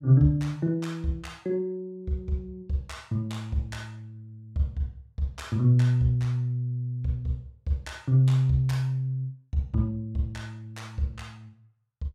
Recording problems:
none

